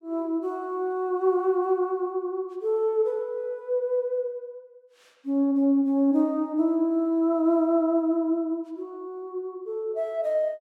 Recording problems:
none

